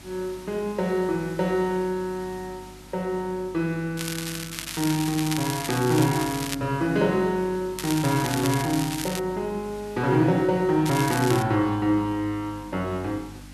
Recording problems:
electrical hum; 50 Hz, harmonics up to 300 Hz, SNR 21 dB
background hiss; slope -1 dB per octave, SNR 22 dB
crackling; from 4 to 6.5 s, from 8 to 9 s and at 11 s; loose cable, SNR 8 dB

